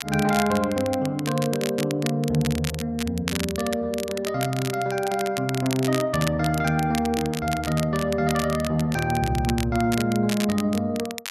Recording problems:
crackle; vinyl, SNR 10 dB

